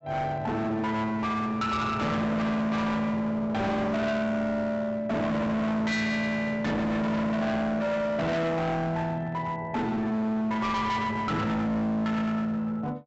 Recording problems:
treble cut off; nothing above 7.7 kHz
distortion; hard clipping, uneven, signal-to-distortion ratio 6 dB

